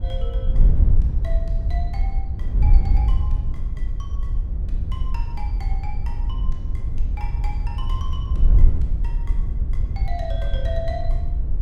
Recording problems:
wind on the microphone; below 62 Hz, SNR -14 dB

